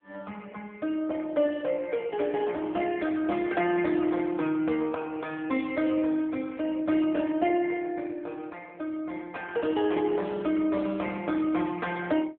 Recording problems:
phone line; 190 Hz to 3.4 kHz, AMR-NB

